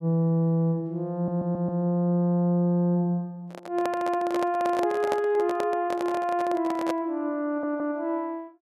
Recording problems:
stutter; at 1 s and at 7.5 s
handling noise; from 3.5 to 7 s; peak 0 dB vs average level

